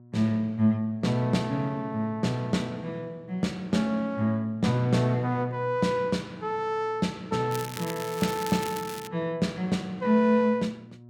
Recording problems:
hum; 60 Hz, harmonics up to 720 Hz, SNR 25 dB
crackling; from 7.5 to 9 s; loose cable, SNR 12 dB

